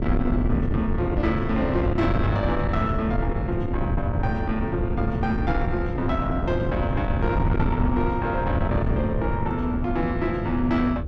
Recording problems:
distortion; soft clipping, signal-to-distortion ratio 12 dB
wind on the microphone; below 190 Hz, SNR 1 dB

